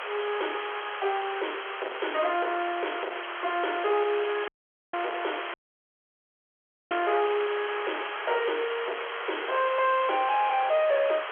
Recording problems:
telephone audio; 370 Hz to 3.3 kHz, G.711
distorted audio; soft clipping, signal-to-distortion ratio 6 dB
hiss; SNR 7 dB
crackle; from 4 to 5.5 s and from 7 to 8 s; loose cable, SNR 17 dB
audio cutting out; at 4.5 s and at 5.5 s for 1.5 s

